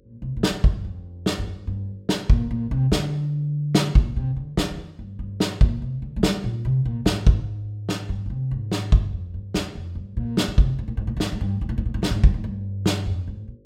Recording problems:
hum; 50 Hz, harmonics up to 550 Hz, SNR 32 dB

